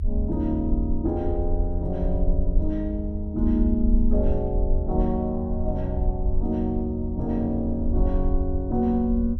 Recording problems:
low-frequency rumble; below 74 Hz, SNR 2 dB

